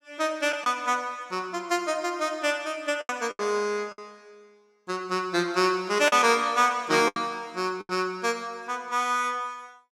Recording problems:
packet loss; 5% of the sound replaced, filled with the last packet

